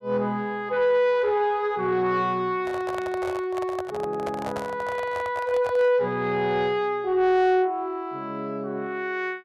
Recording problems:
distortion; soft clipping, signal-to-distortion ratio 11 dB
handling noise; from 2.5 to 6 s; peak -4 dB vs average level

